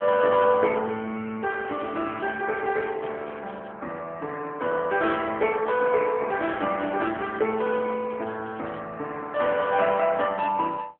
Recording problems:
telephone audio; 240 Hz to 3 kHz, AMR-NB
crackling; from 1.5 to 3.5 s and from 6.5 to 9 s; loose cable, SNR 27 dB

